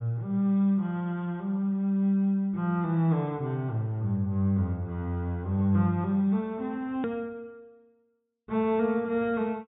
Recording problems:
treble missing; nothing above 4 kHz
click at an edit; at 7 s

